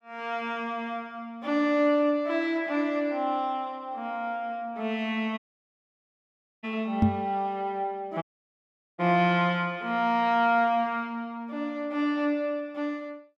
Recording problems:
dropout; at 5.5 s for 1.5 s and at 8 s for 1 s
knock on the microphone; at 7 s; peak +8 dB vs average level

